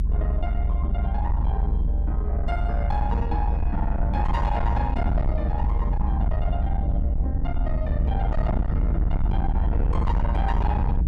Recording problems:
distortion; soft clipping, signal-to-distortion ratio 8 dB
low-frequency rumble; below 70 Hz, SNR -6 dB

